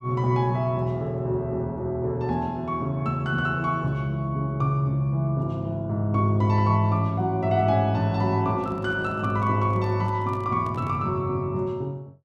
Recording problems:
handling noise; from 8.5 to 11 s; peak -11 dB vs average level

